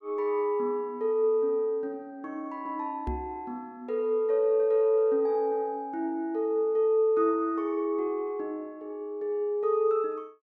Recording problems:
microphone thump; at 3 s; peak -3 dB vs average level

